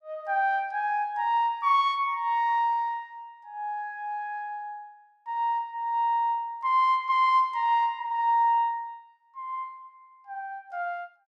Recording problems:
none

